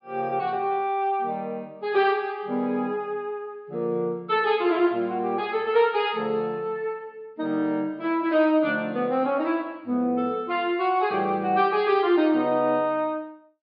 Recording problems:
treble cut off; nothing above 5 kHz

